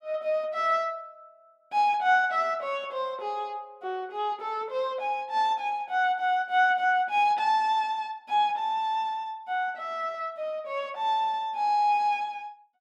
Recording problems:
none

